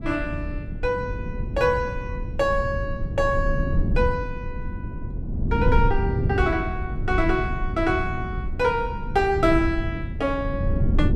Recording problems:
rumble; below 130 Hz, SNR 3 dB

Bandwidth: 13.5 kHz